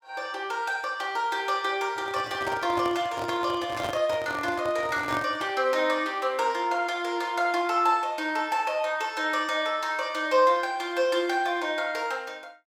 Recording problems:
handling noise; from 2 to 5.5 s; peak -2 dB vs average level

